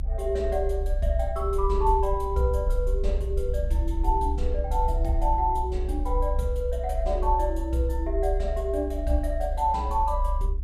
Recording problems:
low-frequency rumble; below 62 Hz, strongest tone 34 Hz, SNR 2 dB

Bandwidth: 15 kHz